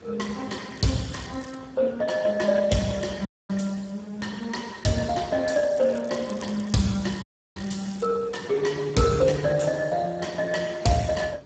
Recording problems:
lossy codec; Speex, log-spectral distance 5 dB, nothing above 7.6 kHz
wind noise; below 860 Hz, SNR 23 dB
crackle; at 1 s and from 5.5 to 8 s; loose cable, SNR 24 dB
audio cutting out; at 3.5 s and at 7 s

